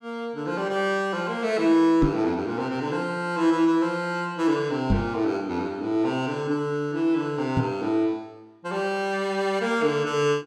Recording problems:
microphone bump; at 2 s, at 5 s and at 7.5 s; peak +6 dB vs average level

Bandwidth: 16.5 kHz